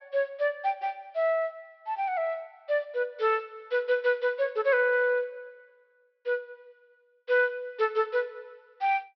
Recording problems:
low-pass filter; nothing above 5.5 kHz

